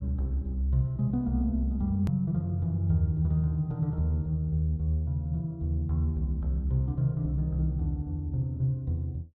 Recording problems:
edit click; at 2 s

